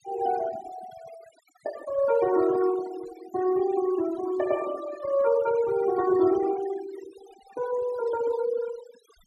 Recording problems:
denoising artefacts; signal-to-artefact ratio 16 dB

